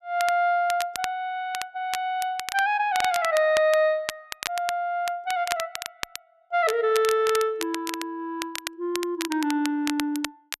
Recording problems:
crackle; vinyl, SNR 10 dB

